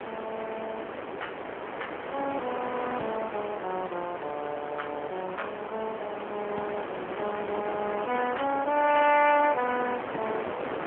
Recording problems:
phone line; 300 Hz to 3.2 kHz, AMR-NB
wind noise; below 1.4 kHz, SNR 6 dB

